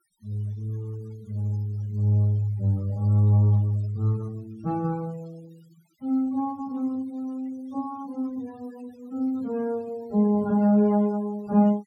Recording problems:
noise reduction artefacts; signal-to-artefact ratio 27 dB

